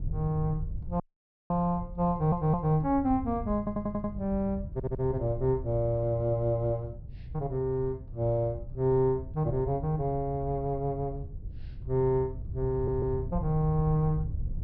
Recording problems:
low-pass filter; nothing above 5.5 kHz
wind noise; below 110 Hz, SNR 10 dB
audio cutting out; at 1 s for 0.5 s
audio stuttering; 4 times, first at 2 s

